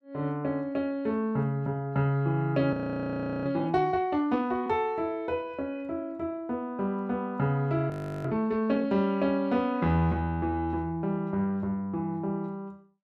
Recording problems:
audio freezing; at 2.5 s for 0.5 s and at 8 s

